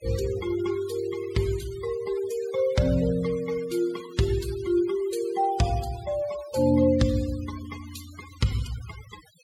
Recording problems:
noise reduction artefacts; signal-to-artefact ratio 17 dB

